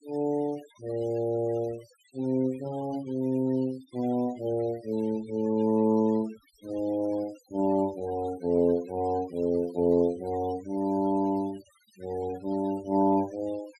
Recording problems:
denoising artefacts; signal-to-artefact ratio 23 dB

